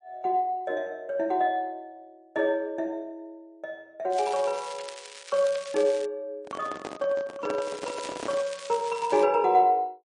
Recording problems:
lossy compression; MP3, log-spectral distance 3 dB, nothing above 8.5 kHz
crackling; from 4 to 6 s and from 7.5 to 9 s; loose cable, SNR 15 dB
microphone handling noise; from 6.5 to 8.5 s; peak -4 dB vs average level

